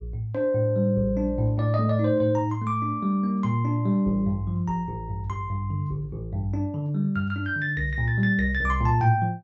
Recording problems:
treble cut off; nothing above 8 kHz

